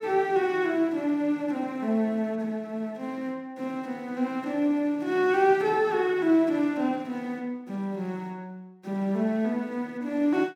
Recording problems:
none

